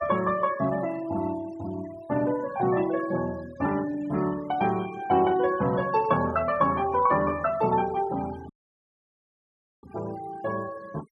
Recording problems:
denoising artefacts; signal-to-artefact ratio 19 dB
audio cutting out; at 8.5 s for 1.5 s

